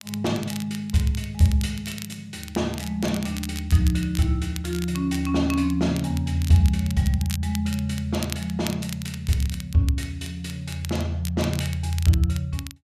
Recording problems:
crackling; vinyl, SNR 14 dB

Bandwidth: 14 kHz